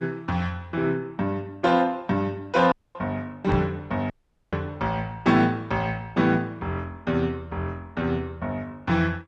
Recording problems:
codec artefacts; MP2, then Opus, log-spectral distance 2 dB, nothing above 8.2 kHz
audio cutting out; at 2.5 s and at 4 s
microphone bump; at 3.5 s; peak +2 dB vs average level

